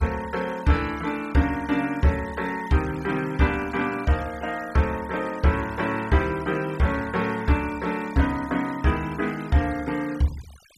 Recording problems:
noise reduction artefacts; signal-to-artefact ratio 19 dB

